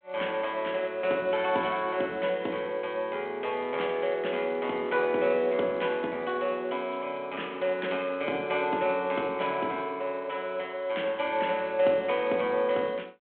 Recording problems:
phone line; 280 Hz to 3.6 kHz, G.726

